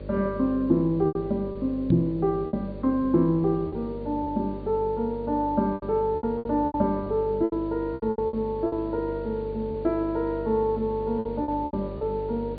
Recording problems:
low-pass filter; nothing above 4.6 kHz
hum; 50 Hz, harmonics up to 600 Hz, SNR 12 dB
hiss; SNR 27 dB
lost packets; 9% of the sound replaced, filled with repeated pitch periods
microphone thump; at 2 s; peak +7 dB vs average level

